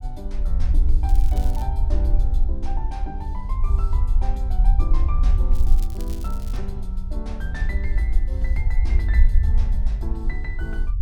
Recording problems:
low-frequency rumble; below 56 Hz, SNR -12 dB
crackling; at 1 s and from 5.5 to 6.5 s; loose cable, SNR 11 dB

